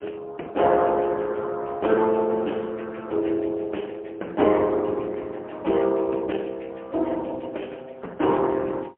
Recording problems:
phone line; 300 Hz to 3 kHz, AMR-NB, then MP3

